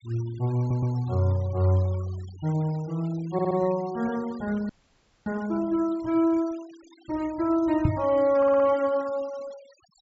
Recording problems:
treble missing; nothing above 8 kHz
noise reduction artefacts; signal-to-artefact ratio 23 dB
stutter; at 0.5 s, at 3.5 s and at 8.5 s
audio freezing; at 4.5 s for 0.5 s
knock on the microphone; at 8 s; peak +6 dB vs average level

